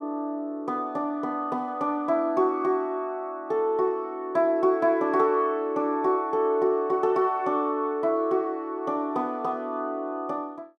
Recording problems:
none

